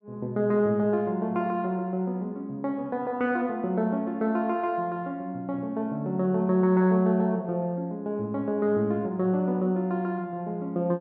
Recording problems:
none

